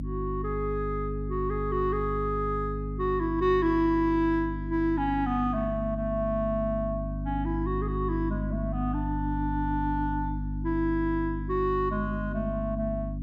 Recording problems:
electrical hum; 50 Hz, harmonics up to 300 Hz, SNR 4 dB

